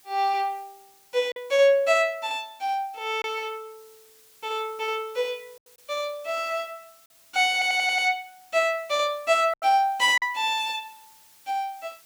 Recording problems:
hiss; slope +1 dB per octave, SNR 28 dB
lost packets; 2% of the sound replaced, filled with silence
audio stuttering; at 7.5 s

